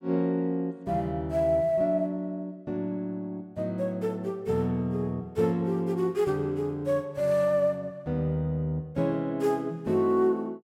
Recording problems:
none

